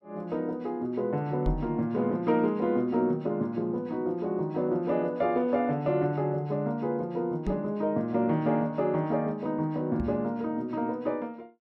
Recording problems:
microphone bump; at 1.5 s, at 7.5 s and at 10 s; peak +1 dB vs average level

